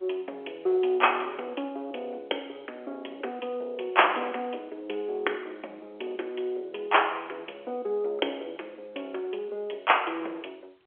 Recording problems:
telephone audio; 320 Hz to 3.4 kHz, G.711

